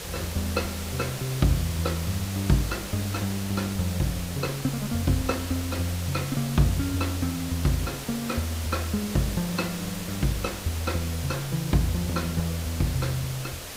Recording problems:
hiss; slope -2 dB per octave, SNR 8 dB
wind noise; below 170 Hz, SNR 20 dB

